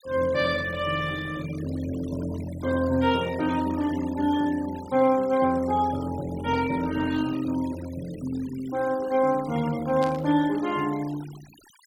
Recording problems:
denoising artefacts; signal-to-artefact ratio 19 dB
static burst; at 10 s; peak -8 dB vs average level

